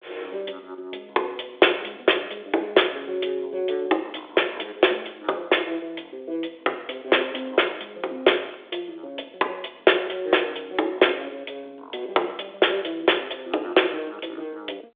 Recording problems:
phone line; 300 Hz to 3.6 kHz, G.726

